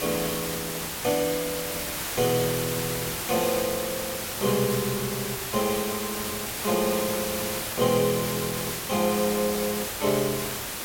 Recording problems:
hiss; slope -2 dB per octave, SNR 2 dB

